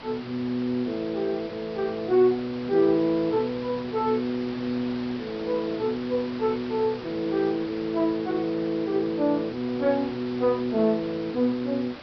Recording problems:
treble cut off; nothing above 5.5 kHz
hiss; SNR 15 dB

